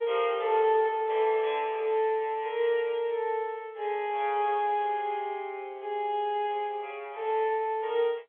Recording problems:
telephone audio; 340 Hz to 3.7 kHz, G.711

